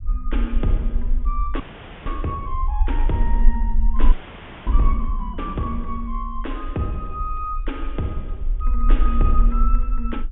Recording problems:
treble missing; nothing above 3.5 kHz
rumble; below 42 Hz, strongest tone 20 Hz, SNR -4 dB
frozen audio; at 1.5 s and at 4 s for 0.5 s

